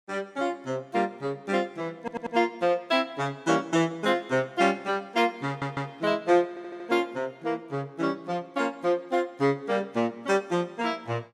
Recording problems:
stutter; at 2 s, at 5.5 s and at 6.5 s

